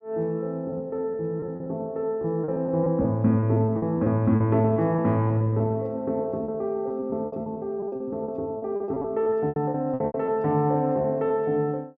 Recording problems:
packet loss; 15% of the sound replaced, filled with repeated pitch periods

